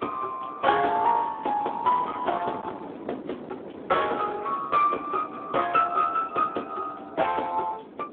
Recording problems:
phone line; 260 Hz to 3 kHz, Speex
distortion; hard clipping, uneven, signal-to-distortion ratio 13 dB
wind noise; below 900 Hz, SNR 15 dB

